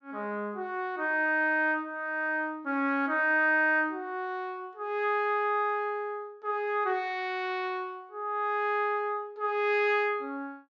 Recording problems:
treble cut off; nothing above 7.4 kHz

